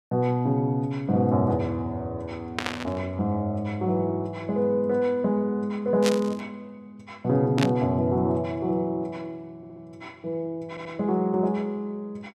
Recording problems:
burst of static; at 2.5 s, at 6 s and at 7.5 s; peak +2 dB vs average level
stutter; at 9.5 s and at 11 s

